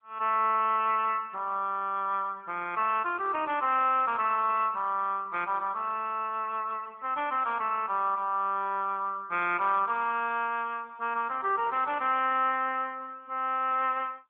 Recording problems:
telephone audio; 280 Hz to 3.4 kHz, AMR-NB

